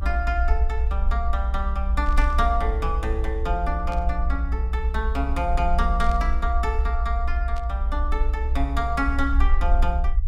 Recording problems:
low-frequency rumble; below 62 Hz, SNR -2 dB
static burst; 4 times, first at 2 s; peak -12 dB vs average level

